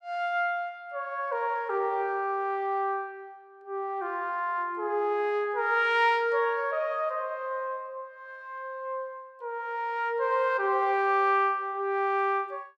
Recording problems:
none

